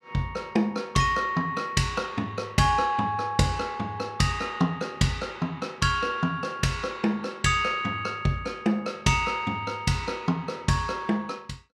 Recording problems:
none

